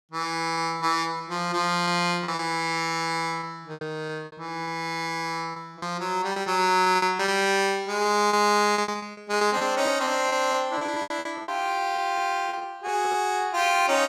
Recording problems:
lost packets; 12% of the sound replaced, filled with repeated pitch periods

